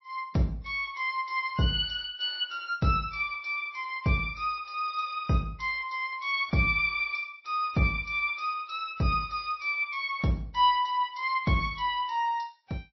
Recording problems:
lossy codec; MP3, log-spectral distance 3 dB, nothing above 5.2 kHz

